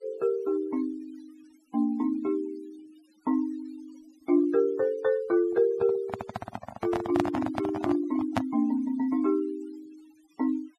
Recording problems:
denoising artefacts; signal-to-artefact ratio 22 dB
microphone handling noise; from 5.5 to 8.5 s; peak +4 dB vs average level

